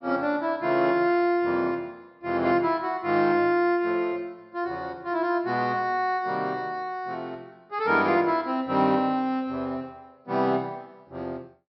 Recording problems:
treble missing; nothing above 5.4 kHz

